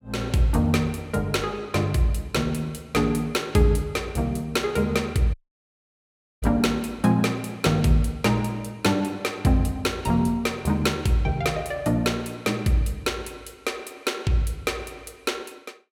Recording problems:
audio cutting out; at 5.5 s for 1 s

